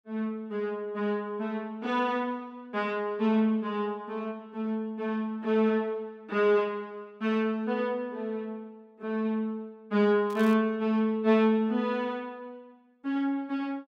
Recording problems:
crackle; at 10 s; loose cable, SNR 23 dB

